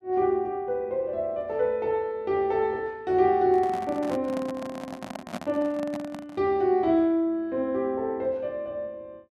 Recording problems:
handling noise; from 3.5 to 6.5 s; peak -3 dB vs average level

